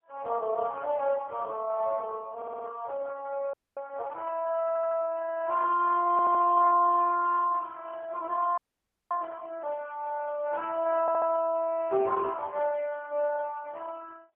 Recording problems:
phone line; 370 Hz to 3.1 kHz, AMR-NB, then MP3
stutter; 4 times, first at 2.5 s
frozen audio; at 3.5 s and at 8.5 s for 0.5 s

